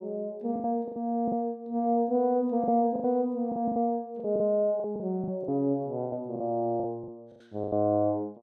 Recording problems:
lost packets; 12% of the sound replaced, filled with the last packet

